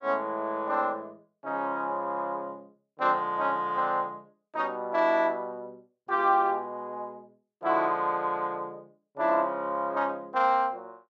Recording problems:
none

